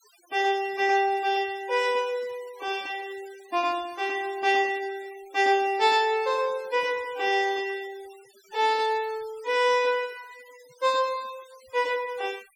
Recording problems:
noise reduction artefacts; signal-to-artefact ratio 22 dB

